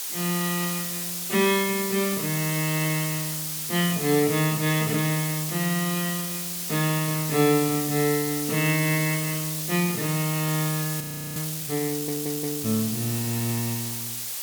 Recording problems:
background hiss; slope +2 dB per octave, SNR 3 dB
audio freezing; at 11 s
audio stuttering; at 12 s

